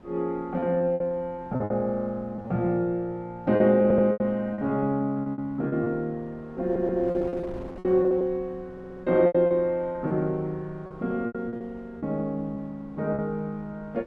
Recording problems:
wind on the microphone; below 530 Hz, SNR 21 dB
lost packets; 11% of the sound replaced, filled with repeated pitch periods
audio stuttering; at 4 s, at 6.5 s and at 8.5 s

